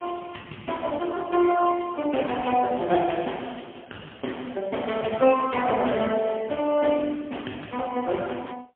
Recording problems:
phone line; 220 Hz to 3.3 kHz, AMR-NB, then MP3

